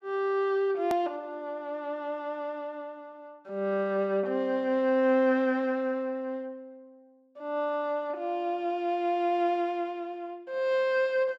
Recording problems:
hard cut with a click; at 1 s

